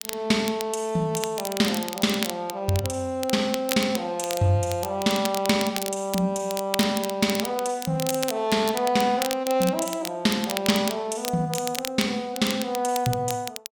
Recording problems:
crackle; vinyl, SNR 9 dB

